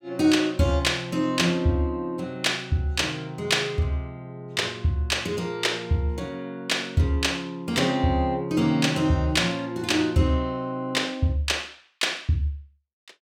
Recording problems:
none

